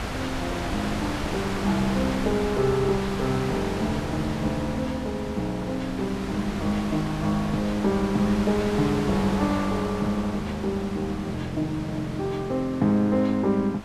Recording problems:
wind on the microphone; below 1.7 kHz, SNR 7 dB

